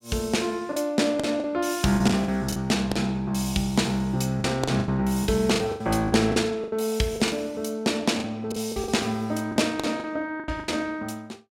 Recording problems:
lost packets; 12% of the sound replaced, filled with the last packet

